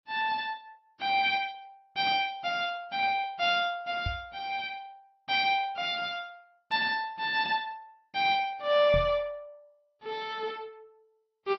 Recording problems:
codec artefacts; MP2, then AAC, log-spectral distance 3 dB, nothing above 4.8 kHz
knock on the microphone; at 4 s and at 9 s; peak -1 dB vs average level

